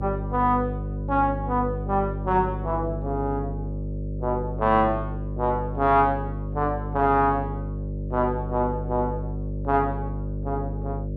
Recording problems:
mains hum; 50 Hz, harmonics up to 600 Hz, SNR 6 dB

